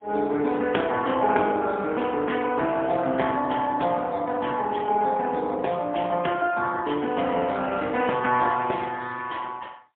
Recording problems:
phone line; 260 Hz to 3.3 kHz, AMR-NB, then MP3

